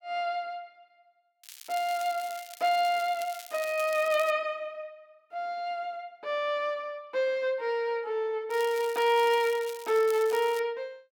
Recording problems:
crackle; from 1.5 to 4.5 s and from 8.5 to 11 s; loose cable, SNR 16 dB

